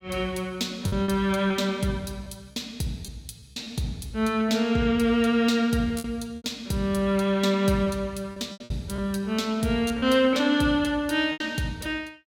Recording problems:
packet loss; 6% of the sound replaced, filled with repeated pitch periods

